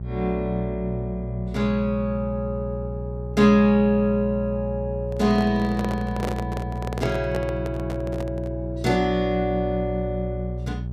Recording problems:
hum; 60 Hz, harmonics up to 420 Hz, SNR 7 dB
handling noise; from 5 to 8.5 s; peak -1 dB vs average level

